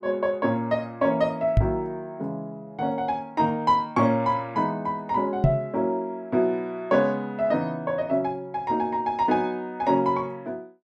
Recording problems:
microphone thump; at 1.5 s and at 5.5 s; peak +9 dB vs average level

